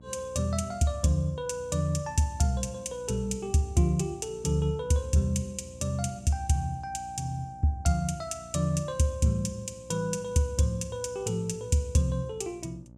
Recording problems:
electrical hum; 60 Hz, harmonics up to 900 Hz, SNR 21 dB

